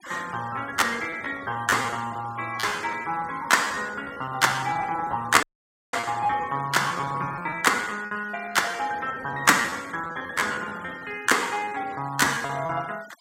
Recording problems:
noise reduction artefacts; signal-to-artefact ratio 21 dB
packet loss; 16% of the sound replaced, filled with repeated pitch periods
dropout; at 5.5 s for 0.5 s

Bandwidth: 16 kHz